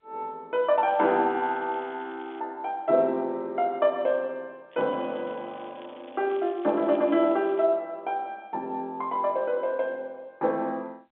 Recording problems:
phone line; 240 Hz to 3.6 kHz, G.711
crackle; from 1 to 2.5 s and from 4.5 to 7.5 s; loose cable, SNR 27 dB

